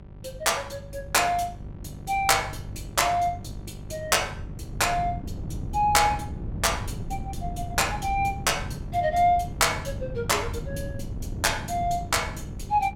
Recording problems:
hum; 50 Hz, harmonics up to 950 Hz, SNR 17 dB
wind noise; below 170 Hz, SNR 12 dB

